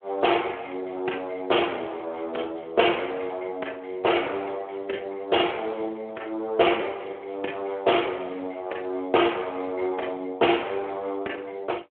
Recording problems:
phone line; 280 Hz to 3.3 kHz, Speex

